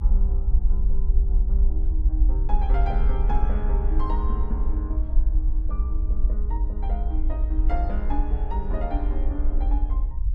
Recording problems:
low-frequency rumble; below 54 Hz, SNR -10 dB

